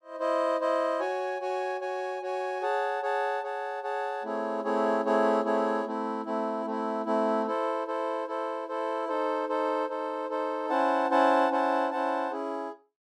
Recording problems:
none

